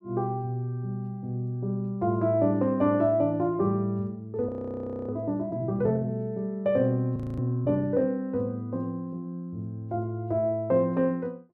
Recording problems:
frozen audio; at 4.5 s for 0.5 s and at 7 s

